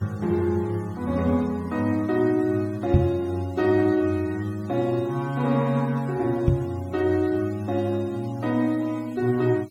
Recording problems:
noise reduction artefacts; signal-to-artefact ratio 26 dB
knock on the microphone; at 3 s and at 6.5 s; peak +8 dB vs average level

